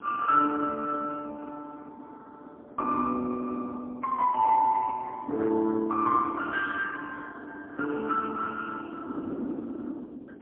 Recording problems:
phone line; 220 Hz to 2.1 kHz, AMR-NB, then MP3
wind on the microphone; below 360 Hz, SNR 16 dB

